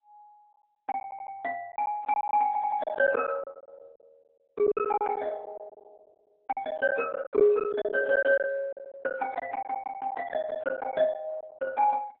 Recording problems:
codec artefacts; AAC, then Opus, log-spectral distance 3 dB, nothing above 3.5 kHz
lost packets; 15% of the sound replaced, filled with silence
audio stuttering; at 1 s and at 2.5 s

